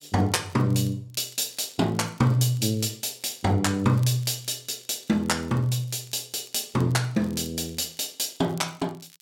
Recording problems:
crackling; vinyl, SNR 27 dB

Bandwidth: 16.5 kHz